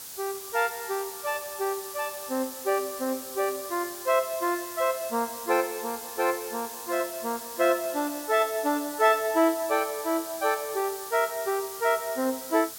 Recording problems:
background hiss; SNR 10 dB

